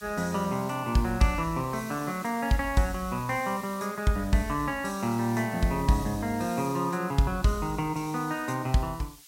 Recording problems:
hiss; slope +4 dB per octave, SNR 19 dB

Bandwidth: 16 kHz